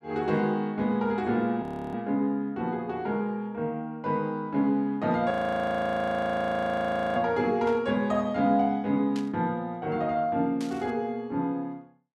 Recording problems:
audio freezing; at 1.5 s and at 5.5 s for 2 s
burst of static; at 7.5 s, at 9 s and at 11 s; peak -10 dB vs average level

